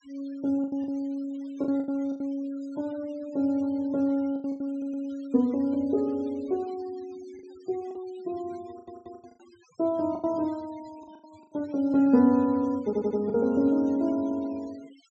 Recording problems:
treble missing; nothing above 8 kHz
noise reduction artefacts; signal-to-artefact ratio 26 dB
packet loss; 7% of the sound replaced, filled with the last packet
stutter; at 4.5 s, at 8.5 s and at 13 s

